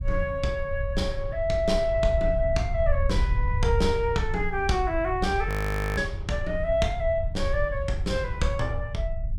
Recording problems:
low-frequency rumble; below 78 Hz, SNR 4 dB
frozen audio; at 5.5 s

